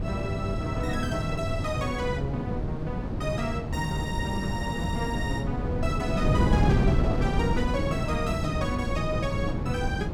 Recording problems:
wind noise; below 230 Hz, SNR -1 dB

